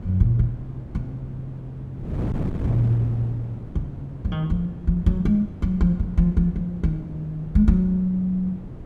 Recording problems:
wind on the microphone; below 250 Hz, SNR 11 dB

